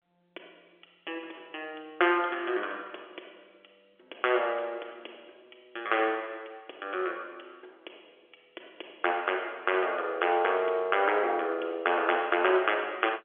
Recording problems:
phone line; 300 Hz to 3.4 kHz, G.711

